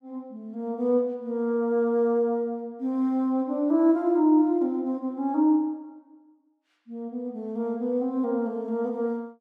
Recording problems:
none

